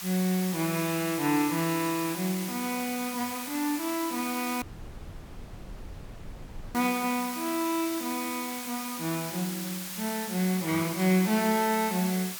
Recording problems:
background hiss; slope +2 dB per octave, SNR 7 dB
dropout; at 4.5 s for 2 s

